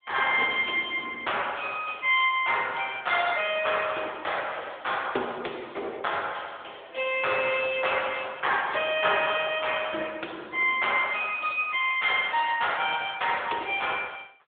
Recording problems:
telephone audio; 280 Hz to 3.6 kHz, AMR-NB

